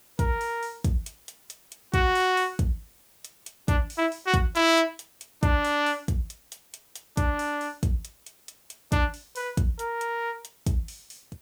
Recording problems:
background hiss; slope -2 dB per octave, SNR 29 dB

